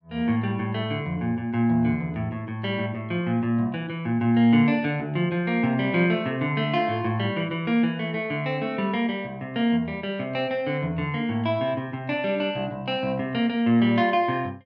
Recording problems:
none

